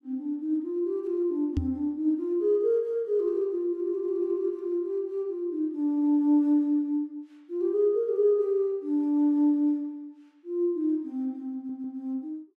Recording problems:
knock on the microphone; at 1.5 s; peak +3 dB vs average level
audio stuttering; at 12 s

